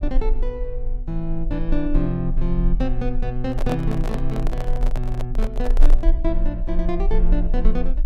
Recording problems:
rumble; below 34 Hz, strongest tone 24 Hz, SNR -1 dB
handling noise; from 3.5 to 6 s; peak +1 dB vs average level

